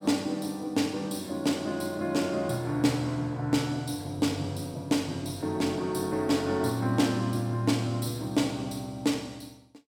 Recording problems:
none

